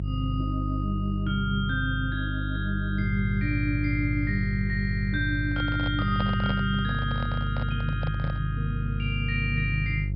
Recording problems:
treble cut off; nothing above 5.5 kHz
hum; 50 Hz, harmonics up to 350 Hz, SNR 1 dB
microphone handling noise; from 5.5 to 8.5 s; peak -2 dB vs average level

